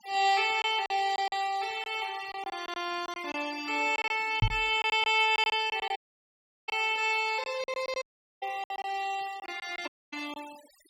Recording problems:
denoising artefacts; signal-to-artefact ratio 19 dB
packet loss; 10% of the sound replaced, filled with silence
microphone thump; at 4.5 s; peak +6 dB vs average level
audio cutting out; at 6 s for 0.5 s, at 8 s and at 10 s

